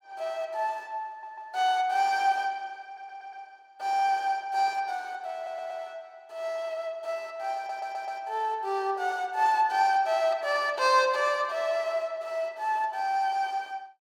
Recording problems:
audio stuttering; 4 times, first at 1 s

